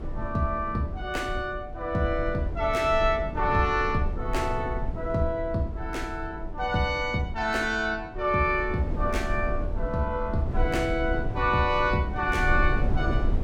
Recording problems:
rumble; below 100 Hz, SNR 6 dB

